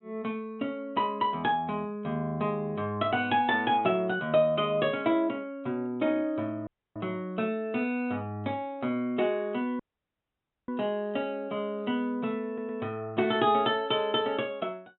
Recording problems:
low-pass filter; nothing above 3.9 kHz
audio cutting out; at 6.5 s and at 10 s for 1 s
audio stuttering; at 12 s

